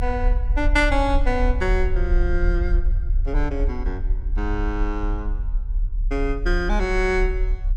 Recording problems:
rumble; below 46 Hz, strongest tone 36 Hz, SNR 0 dB

